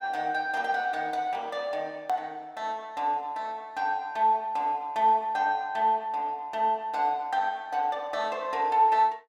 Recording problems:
edit click; at 2 s

